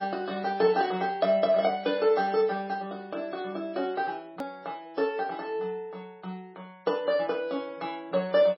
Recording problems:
codec artefacts; MP3, log-spectral distance 2 dB, nothing above 4.5 kHz
hard cut with a click; at 4.5 s

